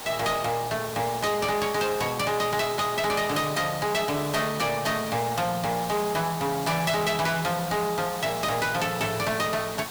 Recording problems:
distorted audio; soft clipping, signal-to-distortion ratio 8 dB
background hiss; SNR 9 dB

